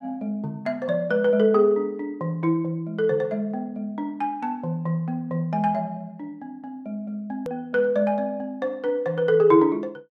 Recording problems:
hard cut with a click; at 7.5 s

